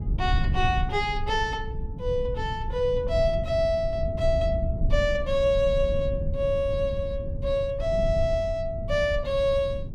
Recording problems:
low-frequency rumble; below 100 Hz, SNR 5 dB

